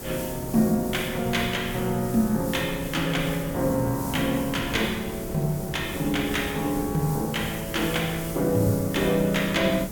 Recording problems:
background hiss; SNR 13 dB
wind on the microphone; below 400 Hz, SNR 12 dB

